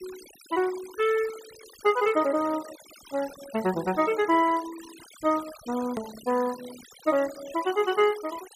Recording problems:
denoising artefacts; signal-to-artefact ratio 17 dB
hard cut with a click; at 6 s

